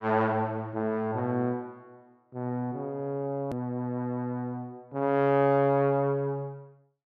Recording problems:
edit click; at 3.5 s

